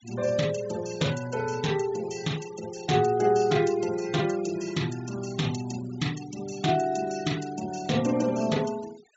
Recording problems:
treble missing; nothing above 8 kHz
noise reduction artefacts; signal-to-artefact ratio 17 dB

